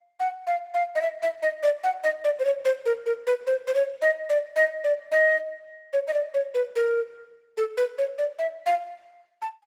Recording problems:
codec artefacts; Opus, log-spectral distance 2 dB, nothing above 20.1 kHz

